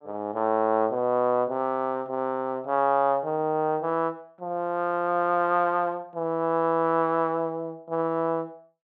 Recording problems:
none

